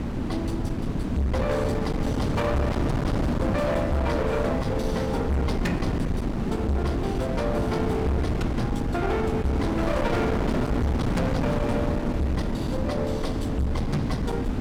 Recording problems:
distorted audio; hard clipping, signal-to-distortion ratio 7 dB
wind on the microphone; below 340 Hz, SNR 0 dB

